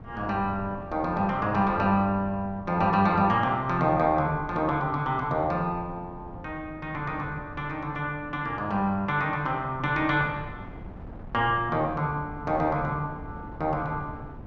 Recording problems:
wind noise; below 270 Hz, SNR 17 dB

